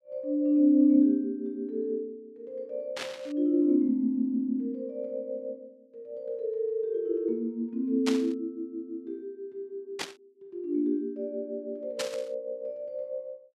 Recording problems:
burst of static; 4 times, first at 3 s; peak +1 dB vs average level

